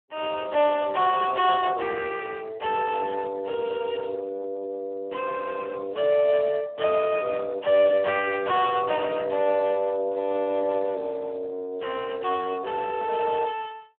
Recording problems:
telephone audio; 320 Hz to 2.8 kHz, Speex

